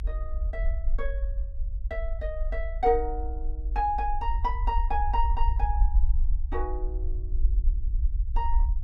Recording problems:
low-frequency rumble; below 52 Hz, SNR -1 dB

